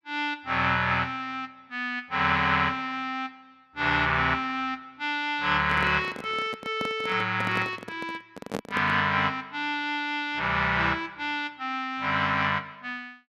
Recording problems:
handling noise; from 5.5 to 9 s; peak -1 dB vs average level

